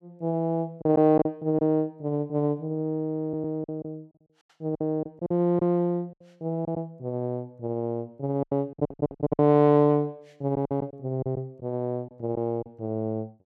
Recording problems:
lost packets; 7% of the sound replaced, filled with silence
audio stuttering; at 3 s and at 8.5 s

